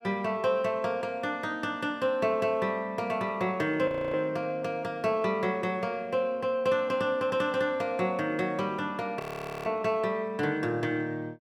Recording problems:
frozen audio; at 4 s and at 9 s

